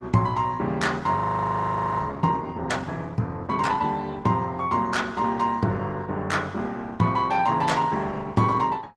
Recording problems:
lossy codec; Opus, log-spectral distance 2 dB
frozen audio; at 1 s for 1 s

